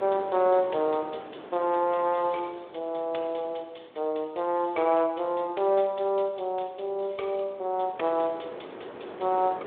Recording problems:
phone line; 280 Hz to 3.5 kHz, Speex
wind noise; below 860 Hz, SNR 17 dB

